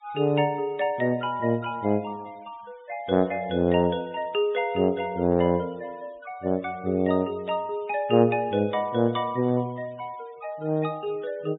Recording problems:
treble cut off; nothing above 4 kHz
noise reduction artefacts; signal-to-artefact ratio 27 dB

